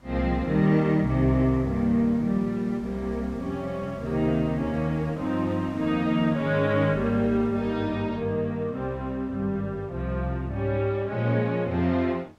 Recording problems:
wind on the microphone; below 1.1 kHz, SNR 25 dB

